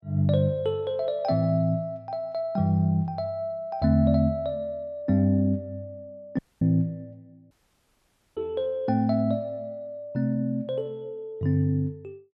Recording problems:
audio cutting out; at 6.5 s and at 7.5 s for 1 s

